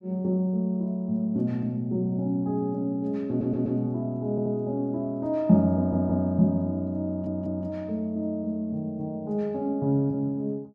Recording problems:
audio stuttering; 4 times, first at 3.5 s

